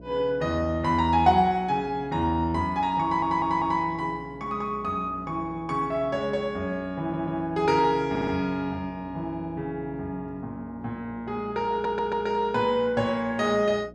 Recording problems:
hum; 60 Hz, harmonics up to 660 Hz, SNR 20 dB
audio stuttering; 4 times, first at 3 s

